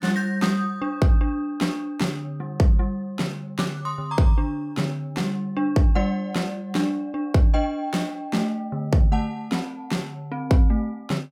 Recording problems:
none

